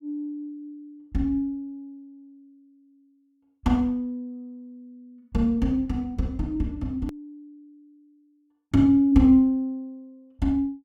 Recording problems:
edit click; at 7 s

